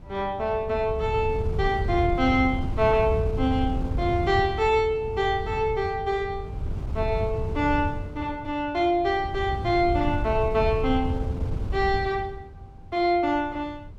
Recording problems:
wind noise; below 120 Hz, SNR 6 dB

